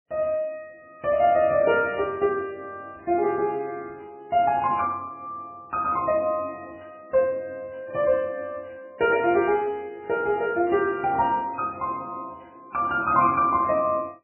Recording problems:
lossy codec; MP3, log-spectral distance 2 dB, nothing above 2.5 kHz

